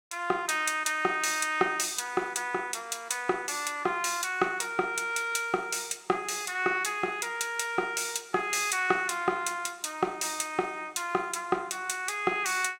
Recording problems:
none

